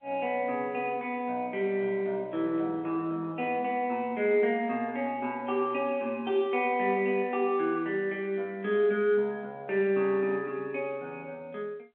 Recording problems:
telephone audio; 260 Hz to 3.5 kHz, G.711

